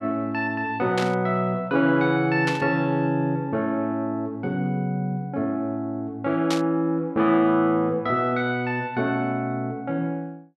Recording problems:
burst of static; at 1 s, at 2.5 s and at 6.5 s; peak -1 dB vs average level

